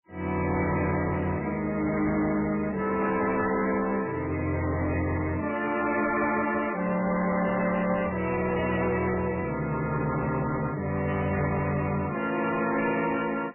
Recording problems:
lossy codec; AAC, then MP3, log-spectral distance 4 dB, nothing above 2.4 kHz
distorted audio; soft clipping, signal-to-distortion ratio 11 dB

